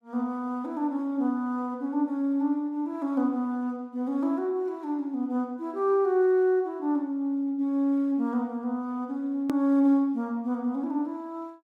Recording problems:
edit click; at 9.5 s

